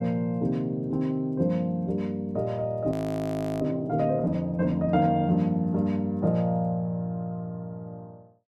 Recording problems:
audio freezing; at 3 s for 0.5 s

